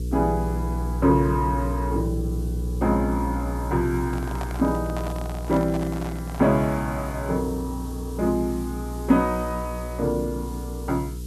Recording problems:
electrical hum; 60 Hz, harmonics up to 480 Hz, SNR 5 dB
background hiss; SNR 21 dB
microphone handling noise; from 4 to 6.5 s; peak -5 dB vs average level

